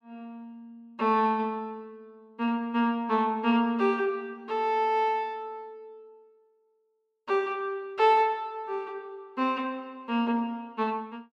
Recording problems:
none

